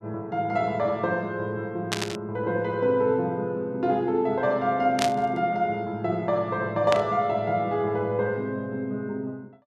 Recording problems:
static burst; at 2 s, at 5 s and at 7 s; peak +3 dB vs average level

